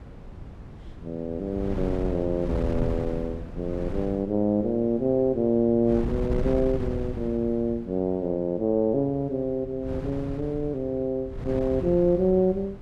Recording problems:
wind on the microphone; below 200 Hz, SNR 10 dB

